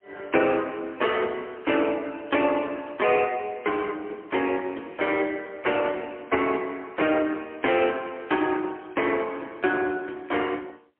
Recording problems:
telephone audio; 240 Hz to 3.3 kHz, AMR-NB, then MP3

